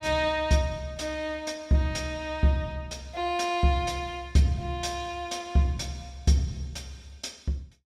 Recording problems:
none

